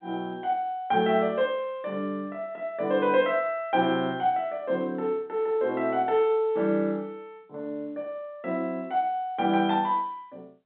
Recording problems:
phone line; 150 Hz to 3.7 kHz, G.711

